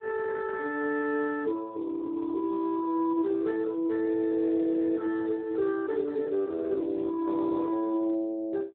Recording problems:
telephone audio; 990 Hz to 2.6 kHz, Speex

